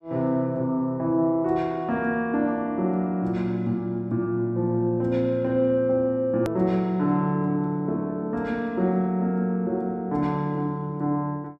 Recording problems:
edit click; at 6.5 s

